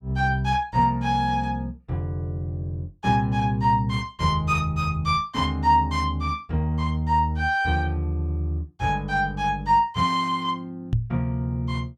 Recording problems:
knock on the microphone; at 11 s; peak +4 dB vs average level

